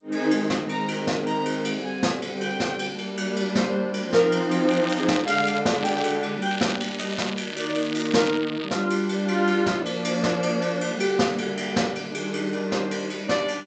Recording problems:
codec artefacts; G.722, log-spectral distance 6 dB, nothing above 7.8 kHz
crackle; at 4.5 s, at 5.5 s and from 6.5 to 9 s; loose cable, SNR 12 dB

